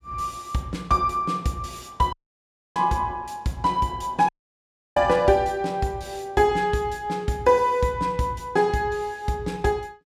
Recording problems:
audio cutting out; at 2 s for 0.5 s and at 4.5 s for 0.5 s

